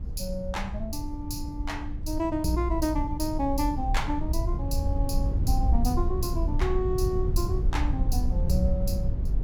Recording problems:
low-frequency rumble; below 78 Hz, SNR -1 dB

